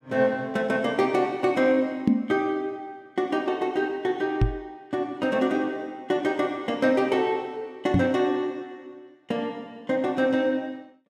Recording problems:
microphone bump; at 2 s, at 4.5 s and at 8 s; peak +9 dB vs average level

